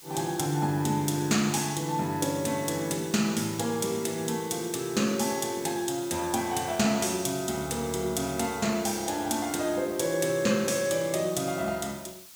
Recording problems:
hiss; SNR 18 dB

